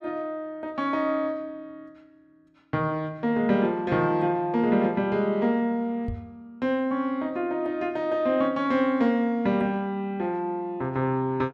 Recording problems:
microphone thump; at 6 s; peak -3 dB vs average level

